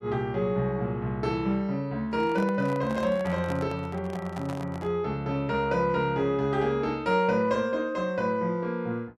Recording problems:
handling noise; from 2 to 5 s; peak -6 dB vs average level

